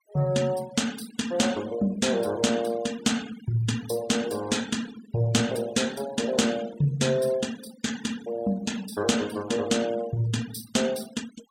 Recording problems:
noise reduction artefacts; signal-to-artefact ratio 17 dB

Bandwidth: 16.5 kHz